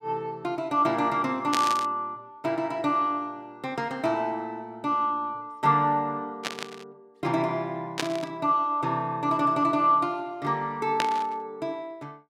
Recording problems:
burst of static; 4 times, first at 1.5 s; peak +4 dB vs average level

